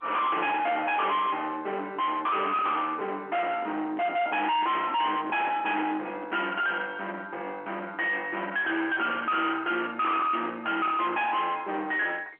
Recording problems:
phone line; 240 Hz to 3.4 kHz, G.711
distorted audio; soft clipping, signal-to-distortion ratio 5 dB
microphone handling noise; from 3.5 to 6.5 s; peak -9 dB vs average level

